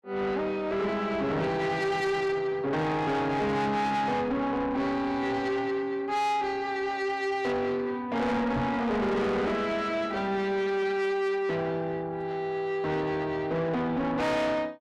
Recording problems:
distorted audio; soft clipping, signal-to-distortion ratio 8 dB
microphone bump; at 8.5 s; peak +3 dB vs average level

